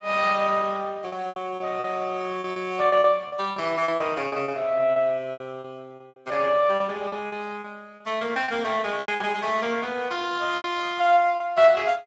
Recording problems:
lossy codec; Speex, log-spectral distance 4 dB
packet loss; 11% of the sound replaced, filled with repeated pitch periods

